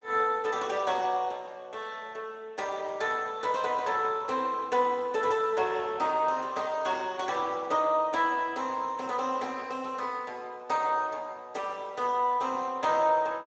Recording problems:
lossy compression; Speex, log-spectral distance 4 dB

